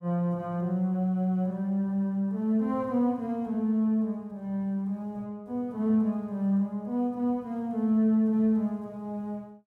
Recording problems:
none

